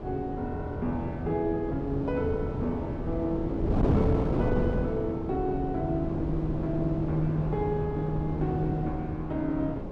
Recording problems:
wind on the microphone; below 370 Hz, SNR 1 dB

